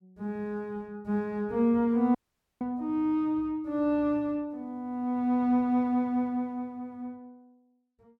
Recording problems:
audio cutting out; at 2 s

